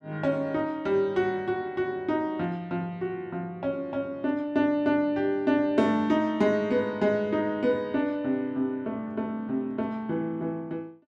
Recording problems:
none

